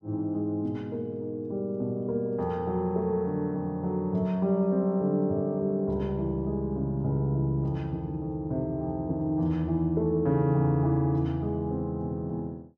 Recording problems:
none

